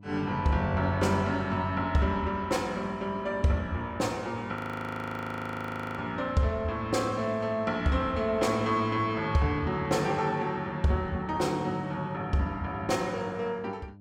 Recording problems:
electrical hum; 50 Hz, harmonics up to 700 Hz, SNR 21 dB
audio freezing; at 4.5 s for 1.5 s

